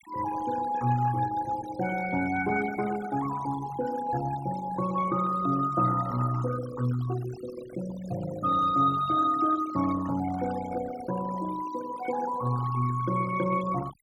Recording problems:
noise reduction artefacts; signal-to-artefact ratio 14 dB

